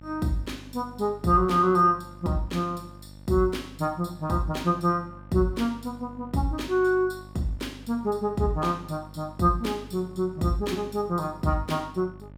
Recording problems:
electrical hum; 50 Hz, harmonics up to 950 Hz, SNR 20 dB

